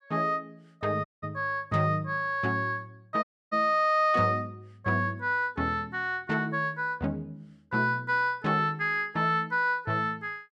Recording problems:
dropout; at 1 s and at 3 s

